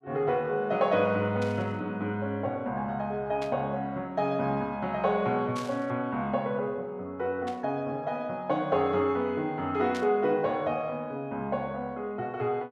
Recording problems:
static burst; 5 times, first at 1.5 s; peak -8 dB vs average level

